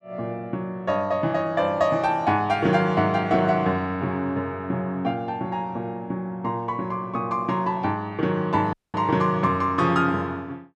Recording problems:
dropout; at 8.5 s

